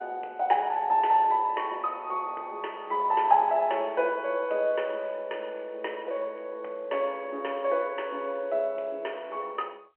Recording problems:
phone line; 340 Hz to 3.2 kHz, G.711

